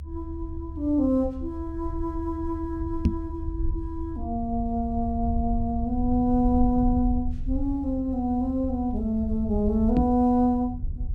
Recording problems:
low-frequency rumble; below 76 Hz, SNR 7 dB
microphone thump; at 3 s and at 10 s; peak +8 dB vs average level

